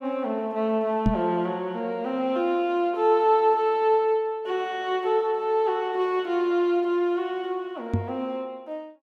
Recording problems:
microphone bump; at 1 s and at 8 s; peak +5 dB vs average level

